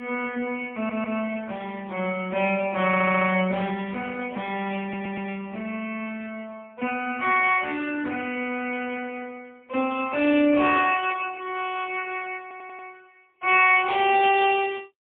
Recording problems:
telephone audio; 220 Hz to 3.3 kHz, AMR-NB, then MP3
stutter; 4 times, first at 1 s

